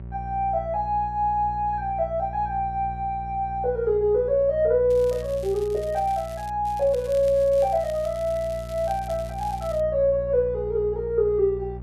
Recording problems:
hum; 60 Hz, harmonics up to 600 Hz, SNR 13 dB
crackling; from 5 to 6.5 s and from 6.5 to 10 s; loose cable, SNR 23 dB

